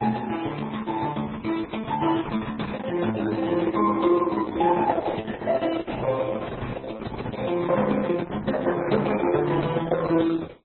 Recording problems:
codec artefacts; Opus, then MP3, log-spectral distance 5 dB, nothing above 4 kHz

